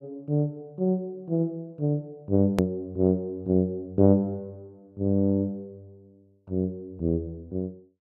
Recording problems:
hard cut with a click; at 2.5 s

